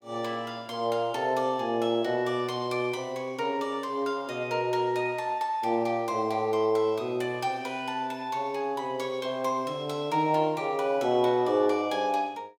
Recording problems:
none

